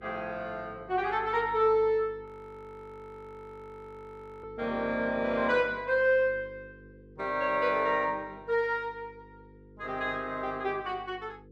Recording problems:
electrical hum; 50 Hz, harmonics up to 500 Hz, SNR 23 dB
frozen audio; at 2.5 s for 2 s

